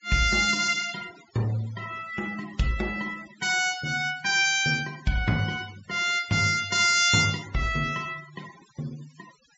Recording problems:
low-pass filter; nothing above 8 kHz
noise reduction artefacts; signal-to-artefact ratio 22 dB

